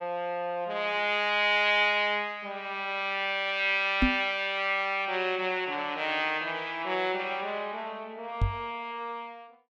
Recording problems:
microphone thump; at 4 s and at 8.5 s; peak +6 dB vs average level

